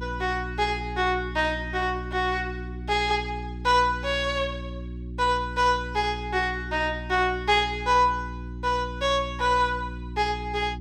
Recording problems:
electrical hum; 60 Hz, harmonics up to 360 Hz, SNR 11 dB

